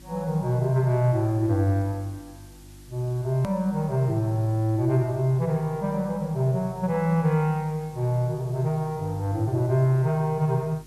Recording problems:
hum; 50 Hz, harmonics up to 350 Hz, SNR 25 dB
hiss; slope +1 dB per octave, SNR 28 dB
hard cut with a click; at 3.5 s

